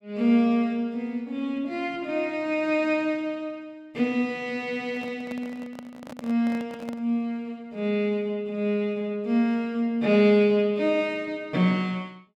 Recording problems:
microphone handling noise; from 5 to 7 s; peak -9 dB vs average level

